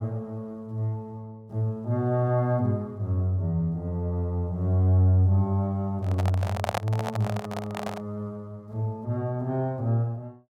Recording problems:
handling noise; from 6 to 8 s; peak +3 dB vs average level

